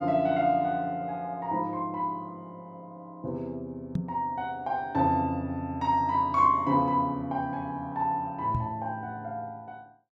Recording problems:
knock on the microphone; at 4 s and at 8.5 s; peak +3 dB vs average level

